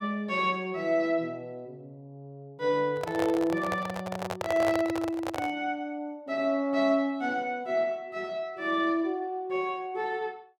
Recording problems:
microphone handling noise; from 3 to 5.5 s; peak +1 dB vs average level

